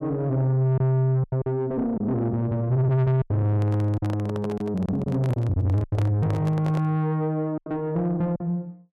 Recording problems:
distorted audio; soft clipping, signal-to-distortion ratio 10 dB
packet loss; 7% of the sound replaced, filled with silence
handling noise; from 3.5 to 7 s; peak -5 dB vs average level

